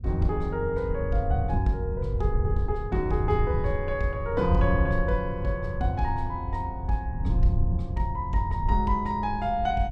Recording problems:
low-frequency rumble; below 94 Hz, SNR 2 dB

